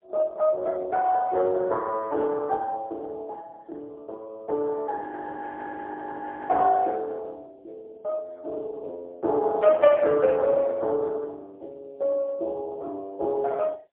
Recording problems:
telephone audio; 320 Hz to 3.6 kHz, AMR-NB, then MP3
frozen audio; at 5 s for 1.5 s

